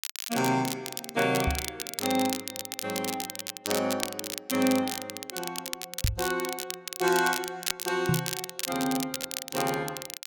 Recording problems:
crackling; vinyl, SNR 4 dB
microphone thump; at 1.5 s, at 6 s and at 8 s; peak +7 dB vs average level

